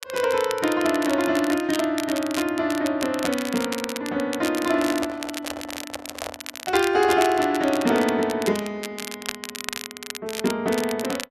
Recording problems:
crackle; vinyl, SNR 10 dB
microphone handling noise; from 4.5 to 7.5 s; peak -6 dB vs average level

